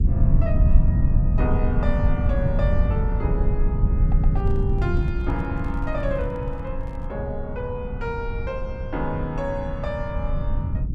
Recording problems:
low-frequency rumble; below 100 Hz, SNR -6 dB
audio stuttering; at 4 s
handling noise; from 4 to 7 s; peak -9 dB vs average level

